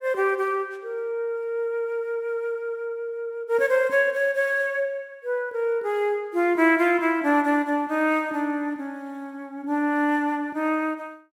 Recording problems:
none

